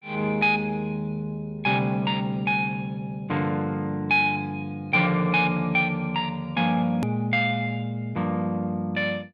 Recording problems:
click at an edit; at 7 s

